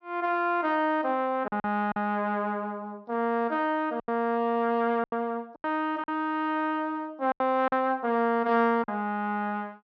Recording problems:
treble cut off; nothing above 6 kHz
packet loss; 6% of the sound replaced, filled with silence

